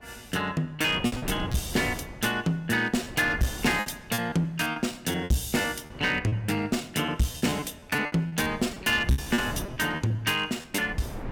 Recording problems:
distorted audio; hard clipping, uneven, signal-to-distortion ratio 10 dB
wind on the microphone; below 490 Hz, SNR 13 dB
packet loss; 11% of the sound replaced, filled with repeated pitch periods

